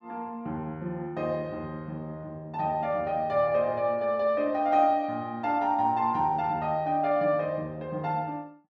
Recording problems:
none

